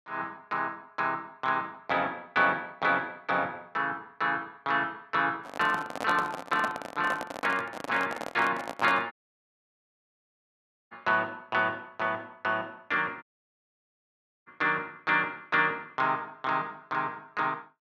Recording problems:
microphone handling noise; from 5.5 to 9 s; peak -1 dB vs average level
audio cutting out; at 9 s for 2 s and at 13 s for 1 s

